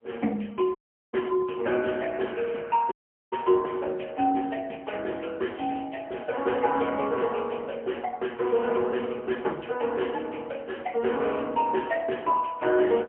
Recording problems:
phone line; 260 Hz to 3.3 kHz, AMR-NB, then MP3
dropout; at 1 s and at 3 s

